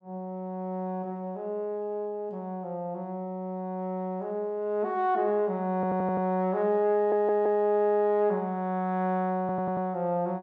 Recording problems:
audio stuttering; at 6 s, at 7 s and at 9.5 s

